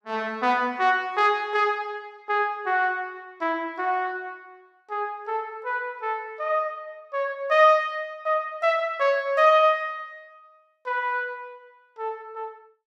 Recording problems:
none

